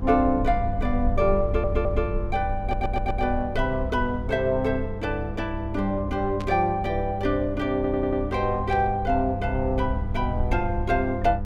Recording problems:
electrical hum; 50 Hz, harmonics up to 1.2 kHz, SNR 9 dB
low-frequency rumble; below 66 Hz, SNR 7 dB
audio stuttering; at 1.5 s, at 2.5 s and at 8 s
static burst; at 6.5 s and at 8.5 s; peak -10 dB vs average level

